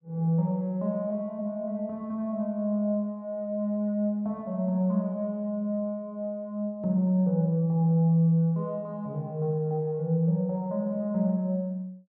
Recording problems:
none

